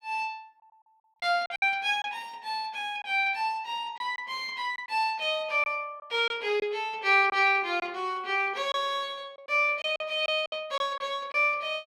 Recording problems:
lost packets; 6% of the sound replaced, filled with silence

